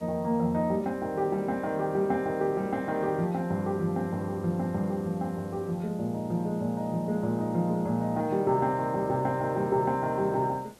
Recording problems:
background hiss; slope -5 dB per octave, SNR 26 dB

